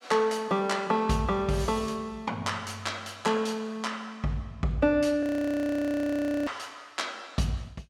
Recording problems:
audio freezing; at 5 s for 1 s

